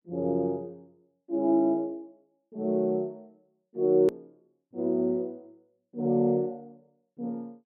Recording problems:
edit click; at 4 s

